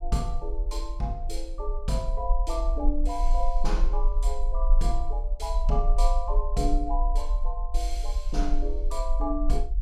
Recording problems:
rumble; below 40 Hz, strongest tone 26 Hz, SNR -3 dB

